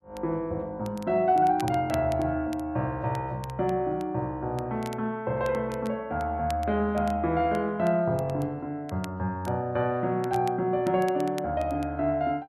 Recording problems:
crackling; vinyl, SNR 22 dB

